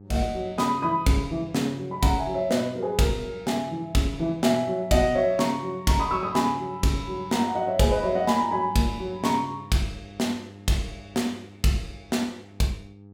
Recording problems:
hum; 50 Hz, harmonics up to 800 Hz, SNR 22 dB

